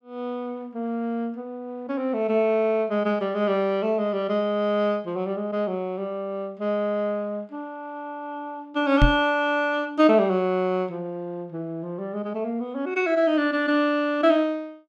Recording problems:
knock on the microphone; at 9 s; peak +8 dB vs average level

